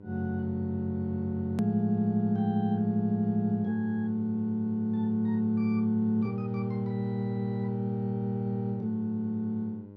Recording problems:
electrical hum; 50 Hz, harmonics up to 1 kHz, SNR 18 dB
click at an edit; at 1.5 s

